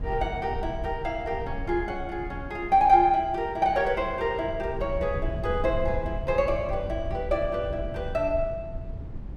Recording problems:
rumble; below 100 Hz, SNR 10 dB

